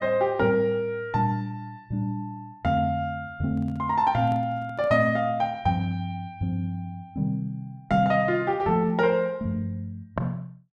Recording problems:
handling noise; from 3.5 to 5 s; peak -9 dB vs average level

